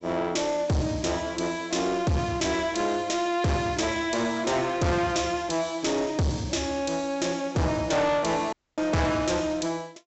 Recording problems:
low-pass filter; nothing above 7.8 kHz
distortion; soft clipping, signal-to-distortion ratio 7 dB
dropout; at 8.5 s

